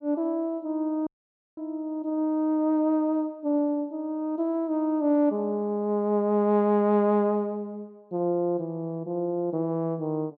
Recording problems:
dropout; at 1 s for 0.5 s

